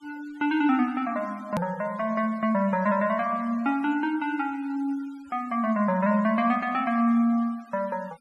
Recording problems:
denoising artefacts; signal-to-artefact ratio 25 dB
click at an edit; at 1.5 s

